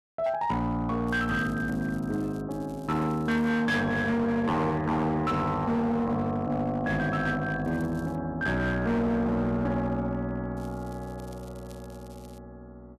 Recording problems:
distortion; hard clipping, signal-to-distortion ratio 11 dB
crackle; 4 times, first at 1 s; loose cable, SNR 28 dB

